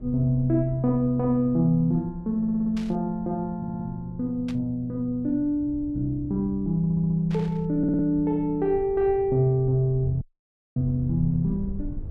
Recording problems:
rumble; below 96 Hz, SNR 18 dB
stutter; 4 times, first at 2.5 s
burst of static; at 3 s, at 4.5 s and at 7.5 s; peak -13 dB vs average level
dropout; at 10 s for 0.5 s

